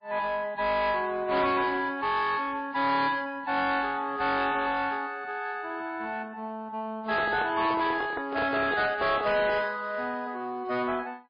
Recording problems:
lossy codec; MP3, log-spectral distance 3 dB, nothing above 4.1 kHz
distortion; soft clipping, signal-to-distortion ratio 10 dB
handling noise; from 7 to 9.5 s; peak -1 dB vs average level

